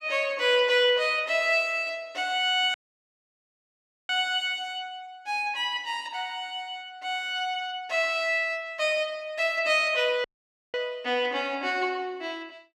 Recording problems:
audio cutting out; at 2.5 s for 1.5 s and at 10 s for 0.5 s

